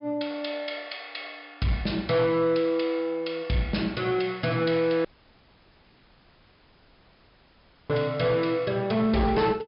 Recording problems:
treble missing; nothing above 5.5 kHz
distortion; hard clipping, signal-to-distortion ratio 11 dB
audio cutting out; at 5 s for 3 s

